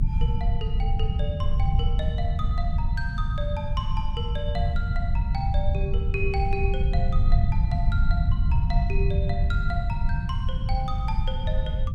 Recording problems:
hum; 50 Hz, harmonics up to 350 Hz, SNR 13 dB
rumble; below 92 Hz, SNR -8 dB

